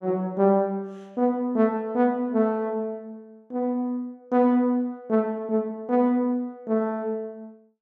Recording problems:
none

